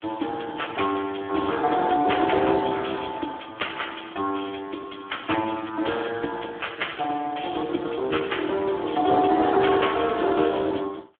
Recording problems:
phone line; 260 Hz to 3.4 kHz, Speex

